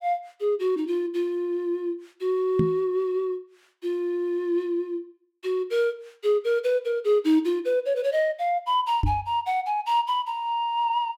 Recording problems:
microphone thump; at 2.5 s and at 9 s; peak +5 dB vs average level

